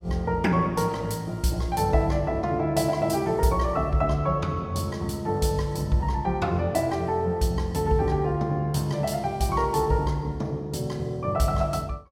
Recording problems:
none

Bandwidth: 16 kHz